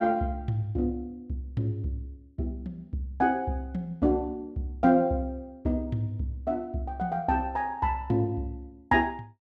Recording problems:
none

